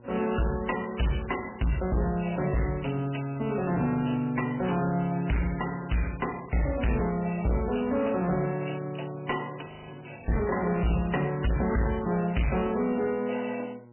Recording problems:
lossy codec; MP3, log-spectral distance 8 dB, nothing above 3 kHz
distortion; hard clipping, uneven, signal-to-distortion ratio 5 dB
electrical hum; 60 Hz, harmonics up to 1.4 kHz, SNR 23 dB
audio freezing; at 9.5 s

